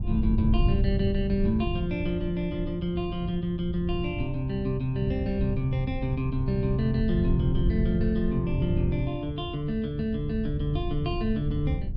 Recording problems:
wind noise; below 120 Hz, SNR 3 dB

